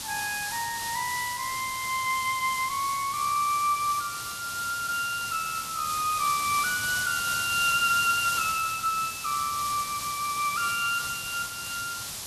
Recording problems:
background hiss; SNR 5 dB

